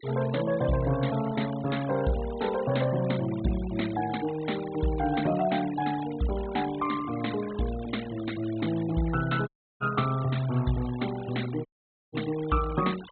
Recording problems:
treble cut off; nothing above 4 kHz
denoising artefacts; signal-to-artefact ratio 15 dB
audio cutting out; at 9.5 s and at 12 s

